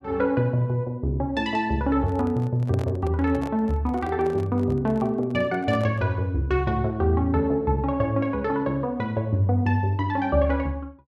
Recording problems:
handling noise; from 2 to 6 s; peak -8 dB vs average level

